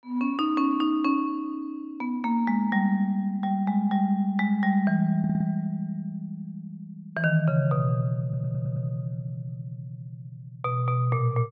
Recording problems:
stutter; at 5 s and at 8 s

